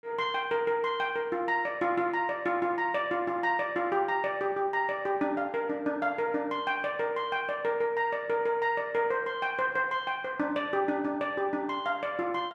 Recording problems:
none

